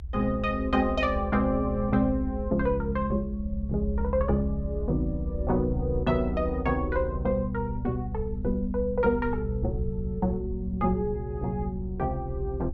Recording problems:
low-frequency rumble; below 72 Hz, SNR 7 dB

